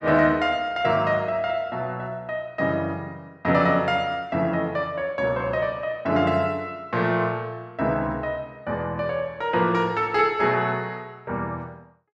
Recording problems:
none

